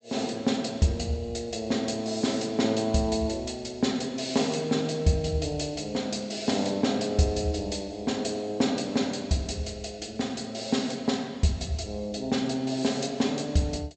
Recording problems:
treble cut off; nothing above 8 kHz

